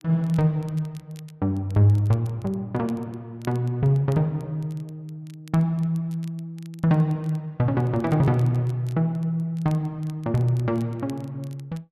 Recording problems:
crackle; vinyl, SNR 29 dB

